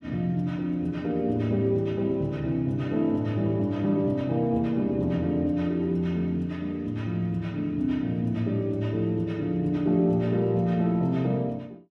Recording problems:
none

